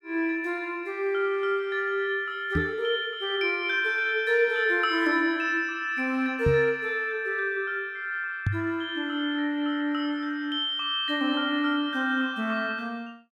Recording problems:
microphone bump; at 2.5 s, at 6.5 s and at 8.5 s; peak +4 dB vs average level

